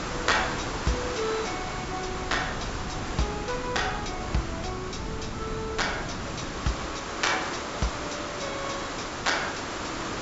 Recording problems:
treble cut off; nothing above 8 kHz
hiss; SNR 3 dB
wind on the microphone; below 250 Hz, SNR 9 dB

